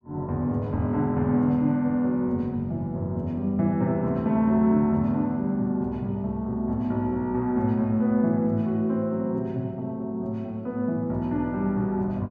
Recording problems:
none

